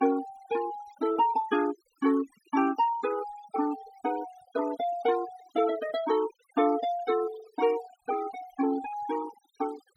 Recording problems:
denoising artefacts; signal-to-artefact ratio 15 dB

